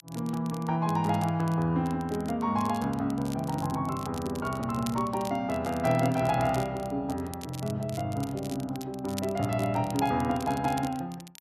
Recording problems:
crackling; vinyl, SNR 17 dB

